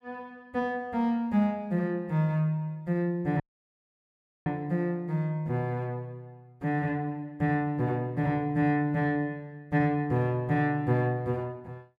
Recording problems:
audio cutting out; at 3.5 s for 1 s

